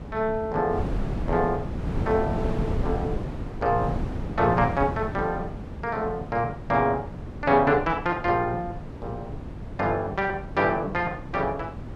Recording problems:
wind on the microphone; below 270 Hz, SNR 7 dB

